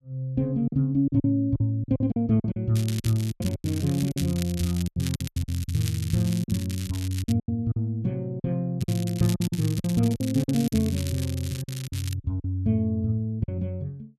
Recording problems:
packet loss; 11% of the sound replaced, filled with silence
crackle; from 3 to 7.5 s and from 9 to 12 s; loose cable, SNR 13 dB

